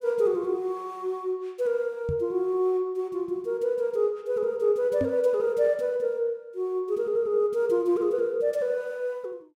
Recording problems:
microphone bump; at 2 s and at 5 s; peak 0 dB vs average level

